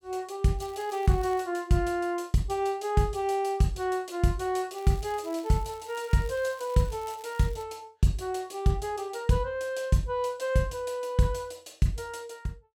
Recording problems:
crackle; at 0.5 s and from 5 to 7.5 s; loose cable, SNR 24 dB

